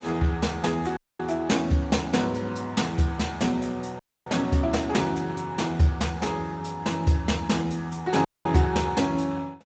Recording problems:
codec artefacts; Speex, log-spectral distance 4 dB, nothing above 7.6 kHz
audio cutting out; at 1 s, at 4 s and at 8.5 s

